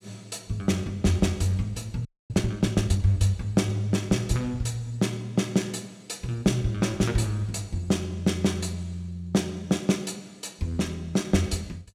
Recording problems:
frozen audio; at 2 s

